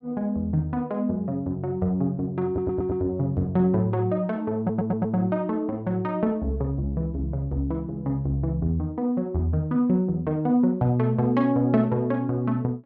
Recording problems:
audio stuttering; at 2.5 s and at 4.5 s

